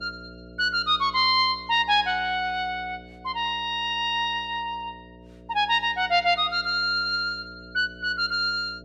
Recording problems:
hum; 60 Hz, harmonics up to 660 Hz, SNR 23 dB

